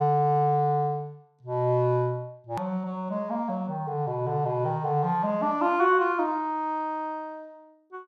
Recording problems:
hard cut with a click; at 2.5 s

